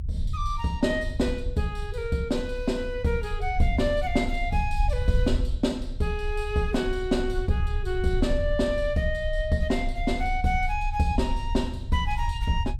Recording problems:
low-frequency rumble; below 70 Hz, strongest tone 30 Hz, SNR 5 dB

